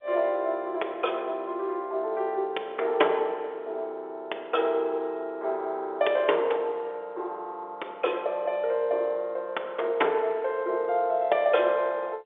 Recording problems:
phone line; 340 Hz to 3.7 kHz, G.711

